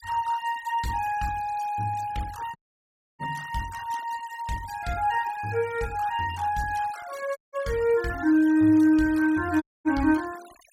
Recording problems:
denoising artefacts; signal-to-artefact ratio 20 dB
dropout; at 2.5 s for 0.5 s, at 7.5 s and at 9.5 s

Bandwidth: 16 kHz